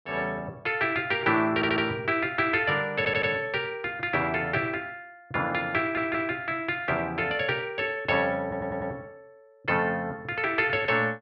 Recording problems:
stutter; 4 times, first at 1.5 s

